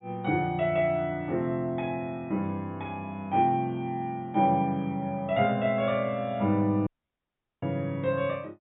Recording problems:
low-pass filter; nothing above 4 kHz
audio cutting out; at 7 s for 1 s

